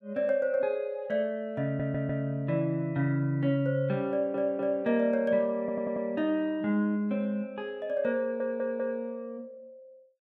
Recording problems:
audio stuttering; 4 times, first at 1.5 s

